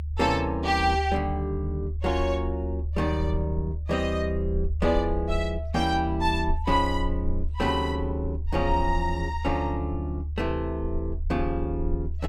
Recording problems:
low-frequency rumble; below 76 Hz, strongest tone 74 Hz, SNR 4 dB

